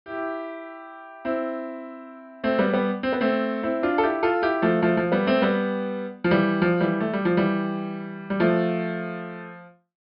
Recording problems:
low-pass filter; nothing above 5.5 kHz

